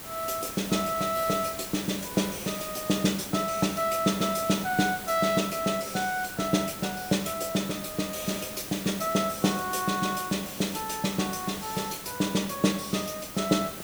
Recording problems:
background hiss; slope -3 dB per octave, SNR 10 dB

